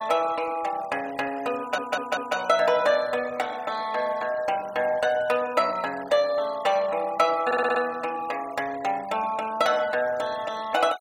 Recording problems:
denoising artefacts; signal-to-artefact ratio 20 dB
stutter; at 1.5 s and at 7.5 s

